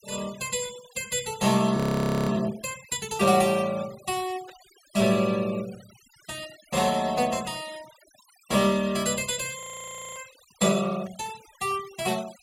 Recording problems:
denoising artefacts; signal-to-artefact ratio 19 dB
frozen audio; at 2 s for 0.5 s and at 9.5 s for 0.5 s
static burst; 4 times, first at 3 s; peak -19 dB vs average level

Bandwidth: 16.5 kHz